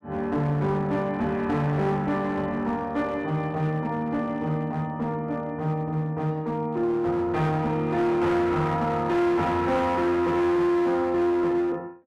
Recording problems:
distorted audio; hard clipping, uneven, signal-to-distortion ratio 10 dB

